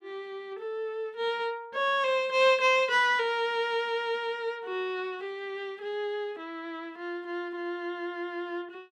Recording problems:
none

